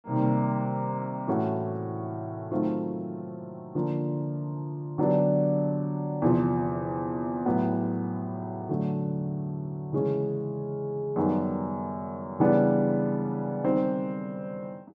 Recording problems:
none

